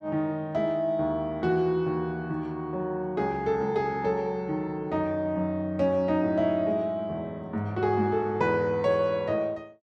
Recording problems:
none

